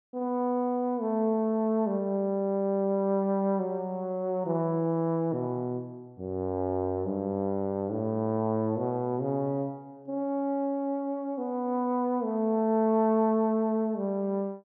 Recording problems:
none

